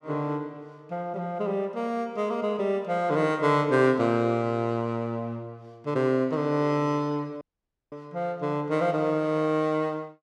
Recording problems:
dropout; at 7.5 s for 0.5 s

